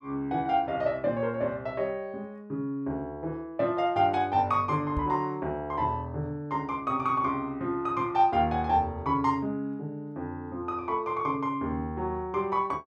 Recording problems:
microphone thump; at 5 s; peak 0 dB vs average level

